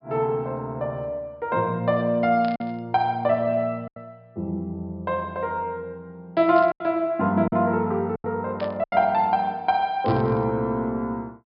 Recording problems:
low-pass filter; nothing above 5.5 kHz
lost packets; 4% of the sound replaced, filled with silence
static burst; 4 times, first at 2.5 s; peak -11 dB vs average level

